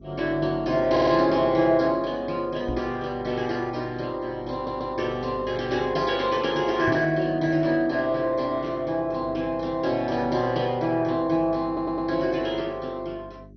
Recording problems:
lossy compression; MP2, log-spectral distance 3 dB, nothing above 5.8 kHz
electrical hum; 50 Hz, harmonics up to 400 Hz, SNR 21 dB
audio stuttering; at 1 s, at 4.5 s and at 12 s
microphone thump; at 2.5 s and at 7 s; peak -2 dB vs average level

